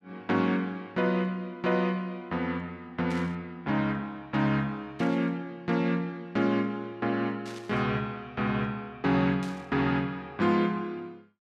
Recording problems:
burst of static; 4 times, first at 3 s; peak -11 dB vs average level

